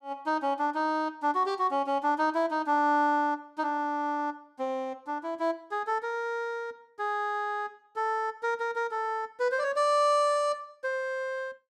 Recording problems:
none

